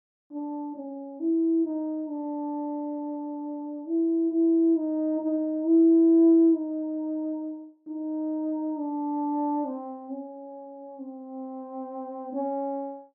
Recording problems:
none

